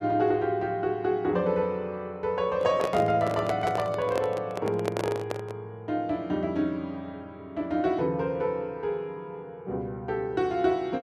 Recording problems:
handling noise; from 2.5 to 5.5 s; peak +2 dB vs average level

